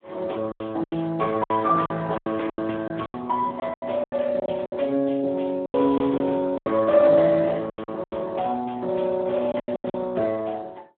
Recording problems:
telephone audio; 190 Hz to 2.8 kHz, Speex
lost packets; 13% of the sound replaced, filled with silence

